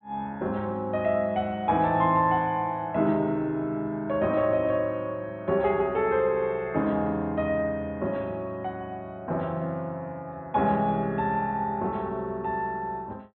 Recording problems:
low-pass filter; nothing above 4 kHz

